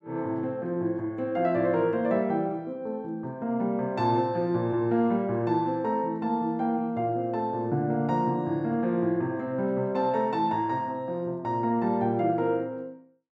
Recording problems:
none

